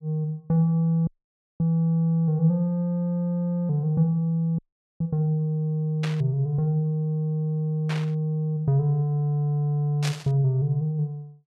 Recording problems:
audio cutting out; at 1 s for 0.5 s and at 4.5 s
burst of static; at 6 s, at 8 s and at 10 s; peak -4 dB vs average level

